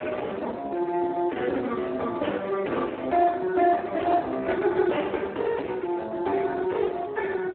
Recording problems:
telephone audio; 260 Hz to 2.6 kHz, Speex
distorted audio; soft clipping, signal-to-distortion ratio 7 dB

